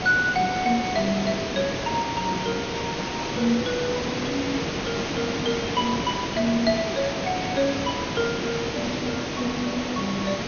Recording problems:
low-pass filter; nothing above 6.6 kHz
background hiss; slope -4 dB per octave, SNR 1 dB

